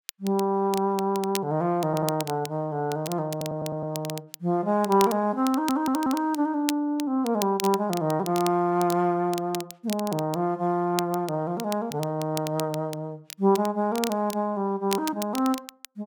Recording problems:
crackling; vinyl, SNR 13 dB
audio stuttering; at 2 s, at 3.5 s and at 5.5 s

